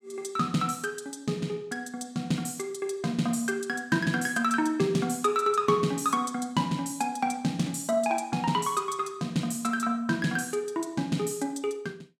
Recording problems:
none

